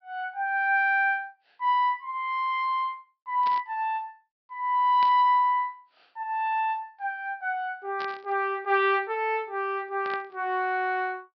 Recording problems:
treble cut off; nothing above 5.5 kHz
burst of static; 4 times, first at 3.5 s; peak -10 dB vs average level

